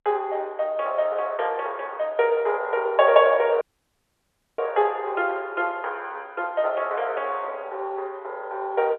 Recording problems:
telephone audio; 370 Hz to 3.4 kHz, G.711
audio cutting out; at 3.5 s for 1 s

